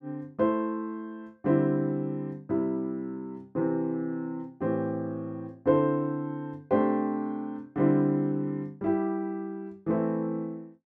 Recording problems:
none

